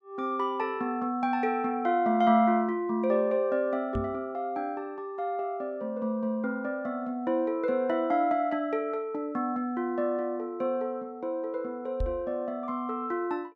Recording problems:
knock on the microphone; at 4 s and at 12 s; peak 0 dB vs average level

